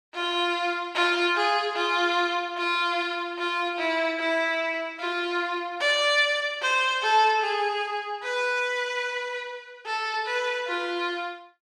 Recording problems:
none

